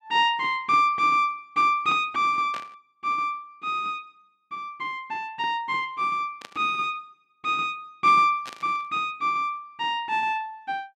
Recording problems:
static burst; at 2.5 s, at 6.5 s and at 8.5 s; peak -9 dB vs average level

